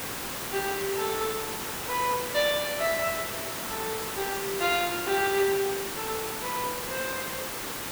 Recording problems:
background hiss; slope -3 dB per octave, SNR 3 dB

